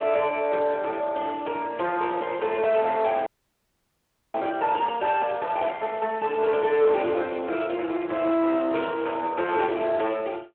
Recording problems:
telephone audio; 340 Hz to 3.1 kHz, Speex
distortion; soft clipping, signal-to-distortion ratio 12 dB
audio freezing; at 3.5 s for 1 s
crackle; at 5 s, from 5.5 to 7 s and at 8.5 s; loose cable, SNR 27 dB

